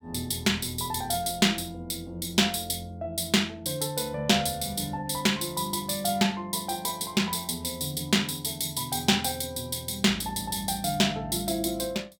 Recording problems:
none

